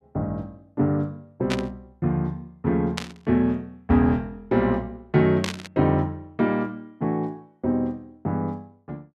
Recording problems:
burst of static; at 1.5 s, at 3 s and at 5.5 s; peak 0 dB vs average level

